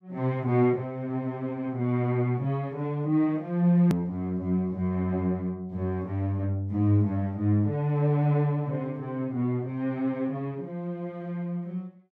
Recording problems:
hard cut with a click; at 4 s

